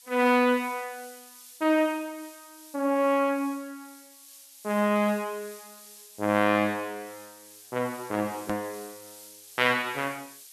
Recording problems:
hiss; slope +6 dB per octave, SNR 20 dB
click at an edit; at 8.5 s

